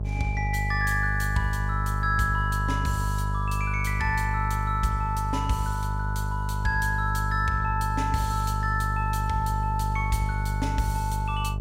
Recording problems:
hum; 50 Hz, harmonics up to 450 Hz, SNR 1 dB

